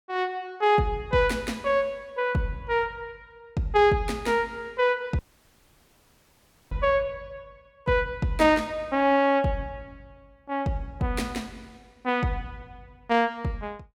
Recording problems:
audio cutting out; at 5 s for 1.5 s

